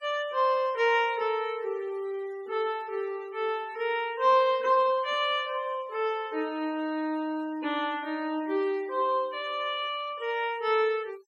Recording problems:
denoising artefacts; signal-to-artefact ratio 23 dB

